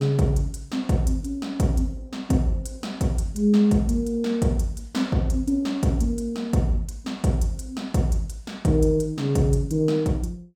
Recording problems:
none

